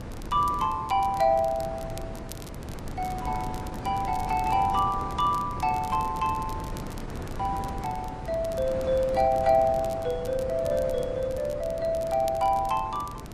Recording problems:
lossy compression; AAC, log-spectral distance 2 dB, nothing above 11.3 kHz
wind noise; below 460 Hz, SNR 10 dB
crackling; vinyl, SNR 22 dB

